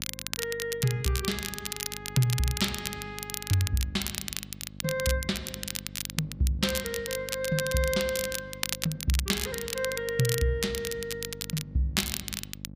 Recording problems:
hum; 50 Hz, harmonics up to 600 Hz, SNR 16 dB
crackling; vinyl, SNR 4 dB

